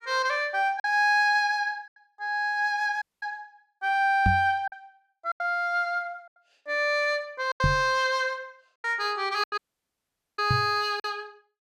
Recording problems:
packet loss; 5% of the sound replaced, filled with silence
audio cutting out; at 3 s and at 9.5 s for 1 s
microphone bump; at 4.5 s, at 7.5 s and at 11 s; peak +4 dB vs average level

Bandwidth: 14 kHz